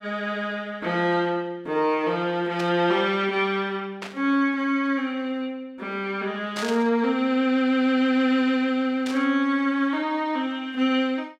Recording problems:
static burst; 4 times, first at 2.5 s; peak -5 dB vs average level

